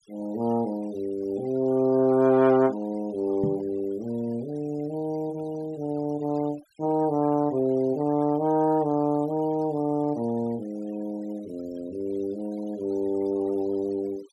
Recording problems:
noise reduction artefacts; signal-to-artefact ratio 24 dB
knock on the microphone; at 3.5 s; peak +1 dB vs average level

